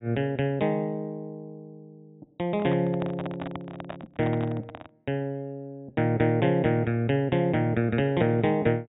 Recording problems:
low-pass filter; nothing above 4 kHz
microphone handling noise; from 2.5 to 5 s; peak -6 dB vs average level

